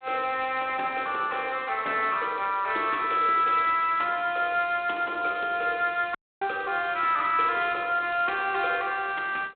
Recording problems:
phone line; 280 Hz to 3.9 kHz, G.726
audio cutting out; at 6 s

